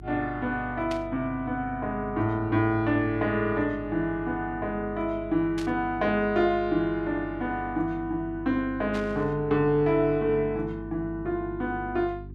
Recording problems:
hum; 50 Hz, harmonics up to 400 Hz, SNR 15 dB
burst of static; at 1 s, at 5.5 s and at 9 s; peak -7 dB vs average level

